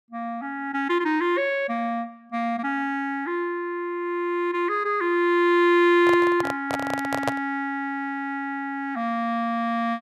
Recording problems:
handling noise; from 6 to 7.5 s; peak +3 dB vs average level

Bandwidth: 14 kHz